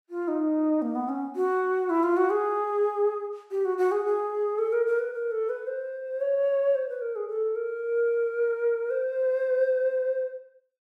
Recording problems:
none

